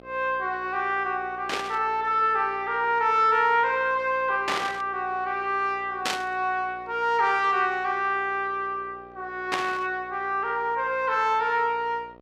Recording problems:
hum; 60 Hz, harmonics up to 2.6 kHz, SNR 25 dB
burst of static; 4 times, first at 1.5 s; peak +2 dB vs average level

